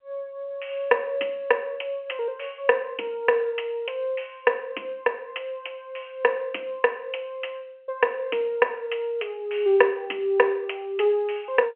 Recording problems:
telephone audio; 300 Hz to 3.1 kHz, G.711

